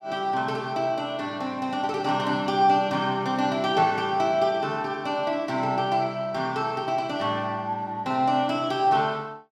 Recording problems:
none

